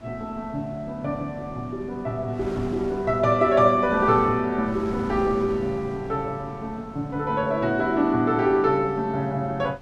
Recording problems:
wind on the microphone; below 490 Hz, SNR 18 dB

